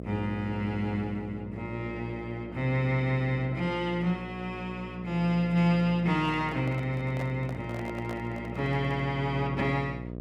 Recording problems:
hum; 60 Hz, harmonics up to 720 Hz, SNR 10 dB
microphone handling noise; from 6 to 9 s; peak -7 dB vs average level

